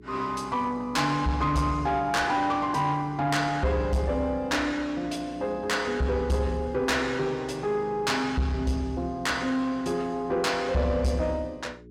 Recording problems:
distortion; soft clipping, signal-to-distortion ratio 12 dB
hum; 60 Hz, harmonics up to 420 Hz, SNR 22 dB

